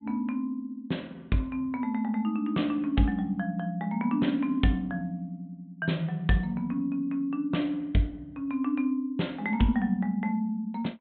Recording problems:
low-pass filter; nothing above 4 kHz

